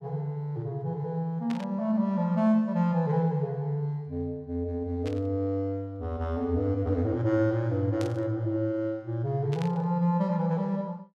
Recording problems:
static burst; 4 times, first at 1.5 s; peak -9 dB vs average level

